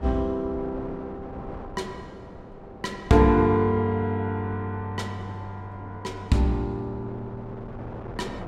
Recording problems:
wind noise; below 620 Hz, SNR 16 dB

